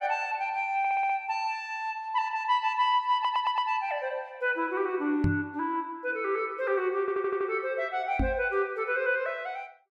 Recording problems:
stutter; at 1 s, at 3 s and at 7 s
microphone bump; at 5 s and at 8 s; peak +4 dB vs average level

